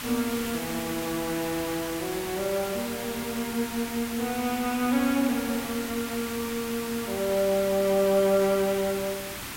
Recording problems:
background hiss; SNR 7 dB

